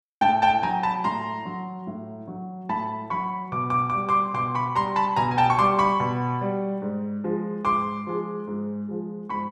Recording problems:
none

